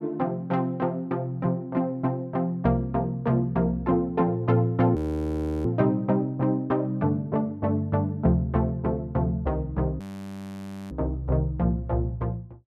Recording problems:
frozen audio; at 5 s for 0.5 s and at 10 s for 1 s

